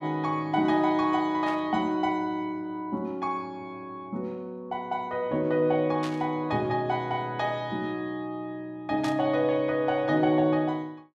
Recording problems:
static burst; at 1.5 s, at 6 s and at 9 s; peak -7 dB vs average level

